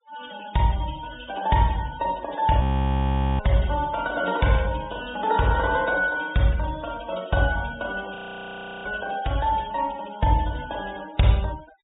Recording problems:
treble cut off; nothing above 4 kHz
noise reduction artefacts; signal-to-artefact ratio 19 dB
audio freezing; at 2.5 s for 1 s and at 8 s for 0.5 s

